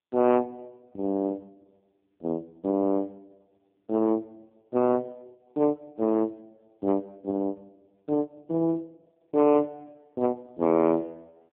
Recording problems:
telephone audio; 170 Hz to 3 kHz, AMR-NB
distortion; soft clipping, signal-to-distortion ratio 12 dB

